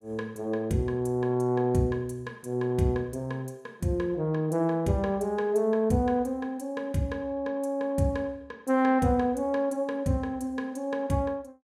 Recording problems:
none

